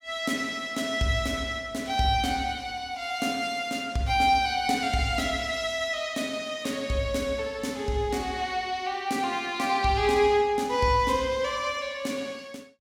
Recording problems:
none

